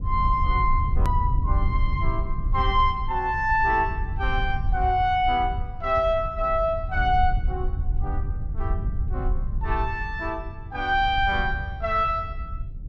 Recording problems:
low-frequency rumble; below 74 Hz, SNR 5 dB
click at an edit; at 1 s

